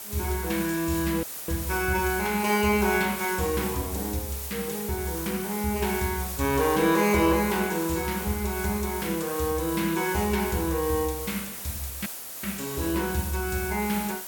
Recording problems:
hiss; slope -1 dB per octave, SNR 7 dB
dropout; at 1 s and at 12 s

